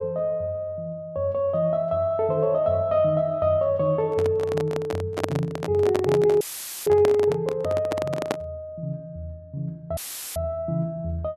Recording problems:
handling noise; from 4 to 8.5 s; peak +3 dB vs average level
dropout; at 6.5 s and at 10 s; filled with static

